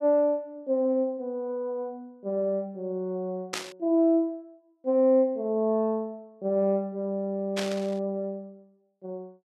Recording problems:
burst of static; at 3.5 s and at 7.5 s; peak 0 dB vs average level

